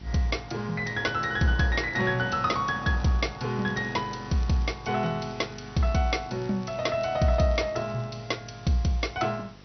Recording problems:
lossy compression; MP2, log-spectral distance 7 dB, nothing above 6 kHz
hum; 50 Hz, harmonics up to 800 Hz, SNR 20 dB
hiss; slope -2 dB per octave, SNR 25 dB
crackle; from 1.5 to 8 s; loose cable, SNR 27 dB

